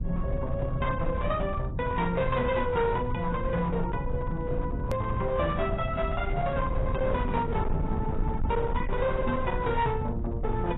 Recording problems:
codec artefacts; AAC, log-spectral distance 2 dB, nothing above 3.3 kHz
distorted audio; hard clipping, uneven, signal-to-distortion ratio 11 dB
low-frequency rumble; below 130 Hz, SNR 4 dB
click at an edit; at 5 s

